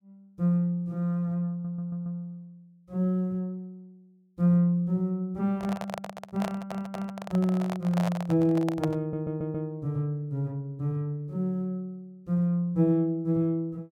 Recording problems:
audio stuttering; at 1.5 s, at 6.5 s and at 9 s
handling noise; from 5.5 to 9.5 s; peak -1 dB vs average level

